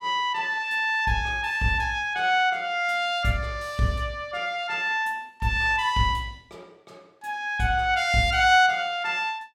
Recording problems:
none

